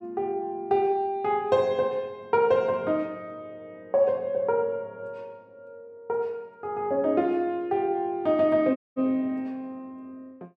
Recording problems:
audio cutting out; at 9 s

